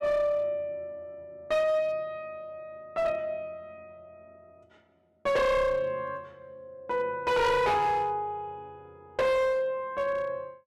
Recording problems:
distorted audio; hard clipping, uneven, signal-to-distortion ratio 7 dB

